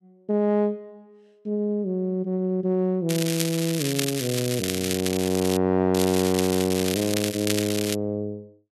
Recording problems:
crackling; from 3 to 5.5 s and from 6 to 8 s; loose cable, SNR 5 dB

